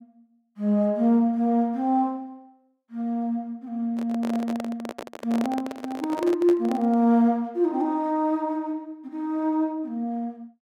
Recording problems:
microphone handling noise; from 4 to 7 s; peak -4 dB vs average level

